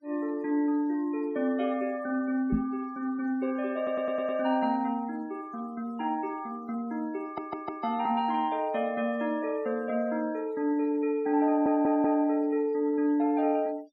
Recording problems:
noise reduction artefacts; signal-to-artefact ratio 27 dB
microphone bump; at 2.5 s; peak +5 dB vs average level
audio stuttering; at 4 s, at 7 s and at 11 s

